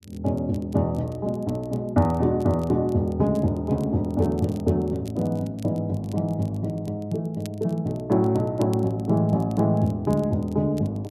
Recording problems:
crackle; vinyl, SNR 28 dB

